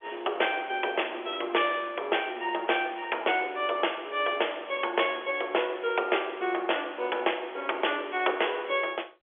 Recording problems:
telephone audio; 340 Hz to 3.4 kHz, G.711

